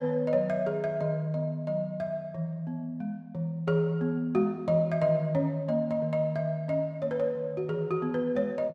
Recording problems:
none

